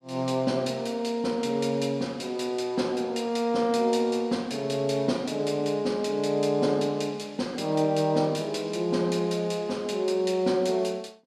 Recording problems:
none

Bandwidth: 13 kHz